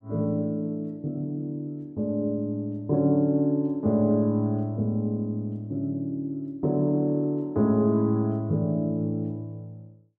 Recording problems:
none

